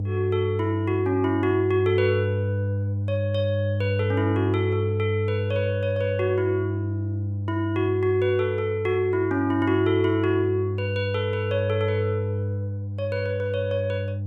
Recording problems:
hum; 50 Hz, harmonics up to 500 Hz, SNR 3 dB

